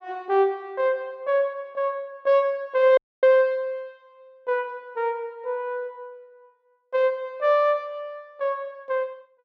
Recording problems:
dropout; at 3 s

